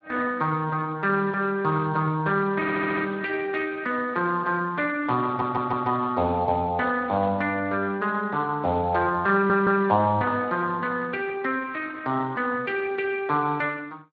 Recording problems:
lossy compression; Speex, then Speex, log-spectral distance 3 dB
stutter; at 2.5 s, at 5.5 s and at 9.5 s

